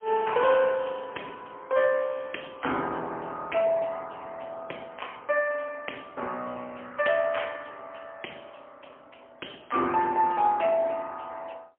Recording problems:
phone line; 220 Hz to 3.1 kHz, AMR-NB, then MP3

